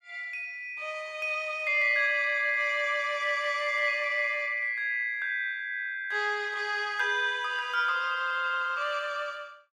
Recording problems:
none

